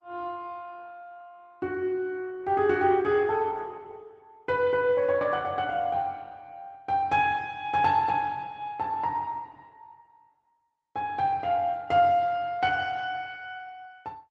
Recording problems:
lossy compression; Opus, log-spectral distance 2 dB

